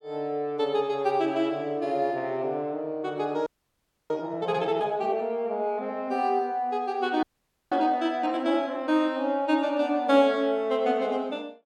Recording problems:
audio freezing; at 3.5 s for 0.5 s and at 7 s

